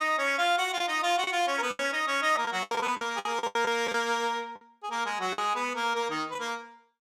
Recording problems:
packet loss; 10% of the sound replaced, filled with the last packet

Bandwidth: 15.5 kHz